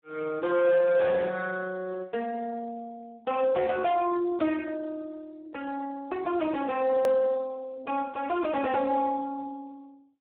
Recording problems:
phone line; 220 Hz to 2.2 kHz, Speex
distortion; soft clipping, signal-to-distortion ratio 9 dB
edit click; at 7 s

